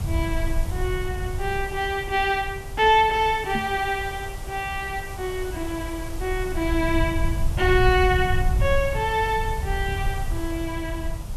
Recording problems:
hiss; SNR 16 dB
low-frequency rumble; below 86 Hz, SNR 6 dB
microphone bump; at 3.5 s; peak -1 dB vs average level

